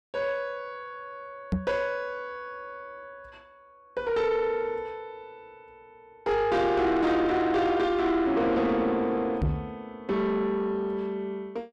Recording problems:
distortion; soft clipping, signal-to-distortion ratio 10 dB
microphone thump; at 1.5 s and at 9.5 s; peak +4 dB vs average level

